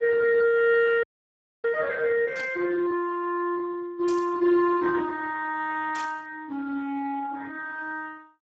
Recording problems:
lossy compression; Speex, log-spectral distance 3 dB
audio freezing; at 1 s for 0.5 s
burst of static; at 2.5 s, at 4 s and at 6 s; peak -9 dB vs average level

